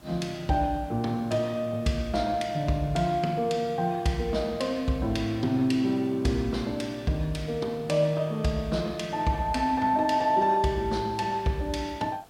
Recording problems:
background hiss; SNR 27 dB

